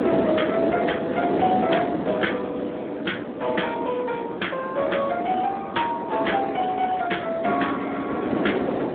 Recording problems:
telephone audio; 240 Hz to 3.5 kHz, Speex
wind on the microphone; below 560 Hz, SNR 3 dB

